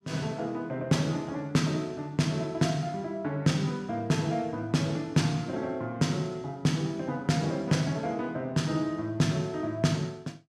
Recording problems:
none

